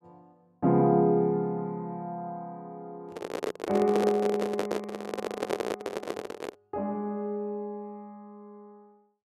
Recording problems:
microphone handling noise; from 3 to 6.5 s; peak +3 dB vs average level

